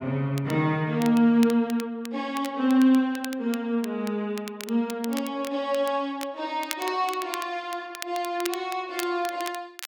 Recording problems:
crackle; vinyl, SNR 15 dB

